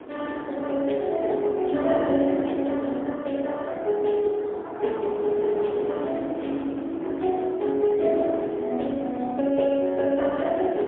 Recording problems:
telephone audio; 220 Hz to 3.5 kHz, AMR-NB, then MP3
wind noise; below 670 Hz, SNR 12 dB

